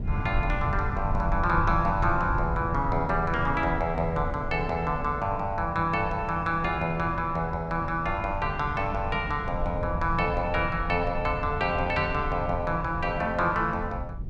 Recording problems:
rumble; below 120 Hz, SNR 7 dB

